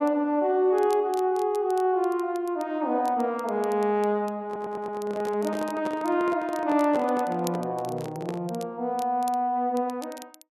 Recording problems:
crackle; vinyl, SNR 23 dB
stutter; at 4.5 s
microphone handling noise; from 4.5 to 8.5 s; peak -5 dB vs average level

